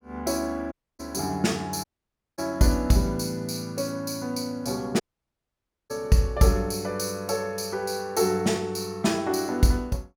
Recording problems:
dropout; at 0.5 s, at 2 s for 0.5 s and at 5 s for 1 s

